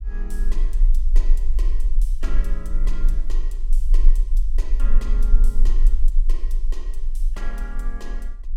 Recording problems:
low-frequency rumble; below 32 Hz, strongest tone 20 Hz, SNR -17 dB

